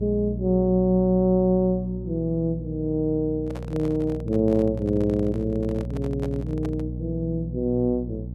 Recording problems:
hum; 60 Hz, harmonics up to 540 Hz, SNR 8 dB
handling noise; from 3.5 to 7 s; peak -9 dB vs average level

